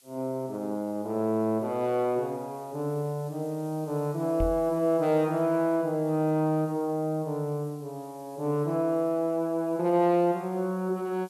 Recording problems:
background hiss; slope +3 dB per octave, SNR 27 dB
knock on the microphone; at 4.5 s; peak 0 dB vs average level

